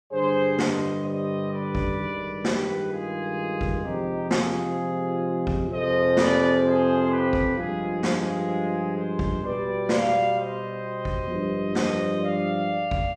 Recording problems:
none

